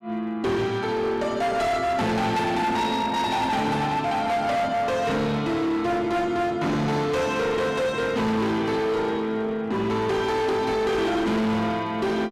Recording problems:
distorted audio; hard clipping, uneven, signal-to-distortion ratio 8 dB

